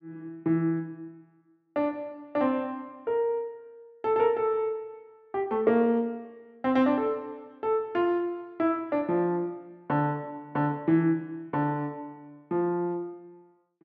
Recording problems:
none

